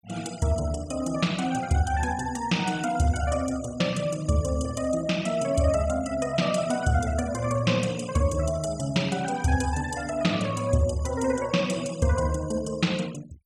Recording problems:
denoising artefacts; signal-to-artefact ratio 17 dB

